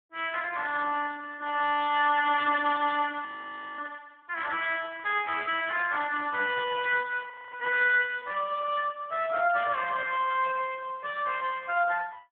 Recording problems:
phone line; 340 Hz to 3.4 kHz, Speex
audio freezing; at 3.5 s for 0.5 s and at 7.5 s

